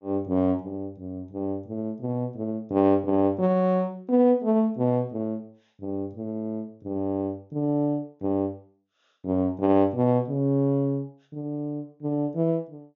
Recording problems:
treble missing; nothing above 7.1 kHz

